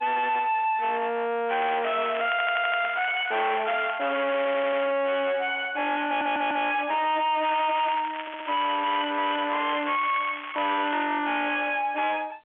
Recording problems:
telephone audio; 320 Hz to 3.5 kHz, G.711
distortion; soft clipping, signal-to-distortion ratio 6 dB
crackling; from 1.5 to 5 s and from 7.5 to 11 s; loose cable, SNR 12 dB
audio stuttering; 4 times, first at 2.5 s

